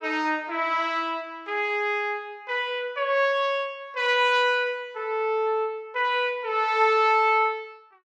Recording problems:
none

